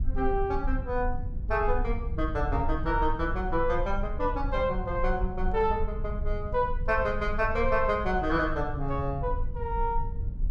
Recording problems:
low-frequency rumble; below 60 Hz, strongest tone 24 Hz, SNR 5 dB

